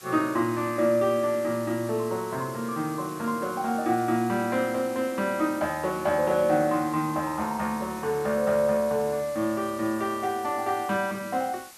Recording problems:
background hiss; slope 0 dB per octave, SNR 18 dB

